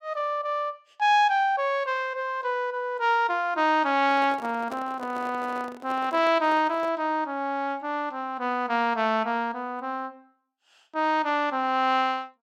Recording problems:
microphone handling noise; from 4 to 7 s; peak -9 dB vs average level

